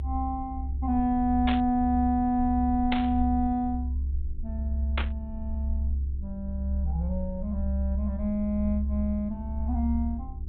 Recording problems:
low-pass filter; nothing above 4 kHz
electrical hum; 50 Hz, harmonics up to 400 Hz, SNR 17 dB
low-frequency rumble; below 70 Hz, strongest tone 68 Hz, SNR 4 dB
burst of static; at 1.5 s, at 3 s and at 5 s; peak +1 dB vs average level

